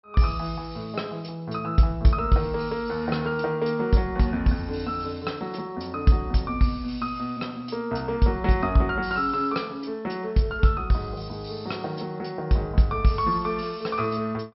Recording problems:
treble cut off; nothing above 5.6 kHz

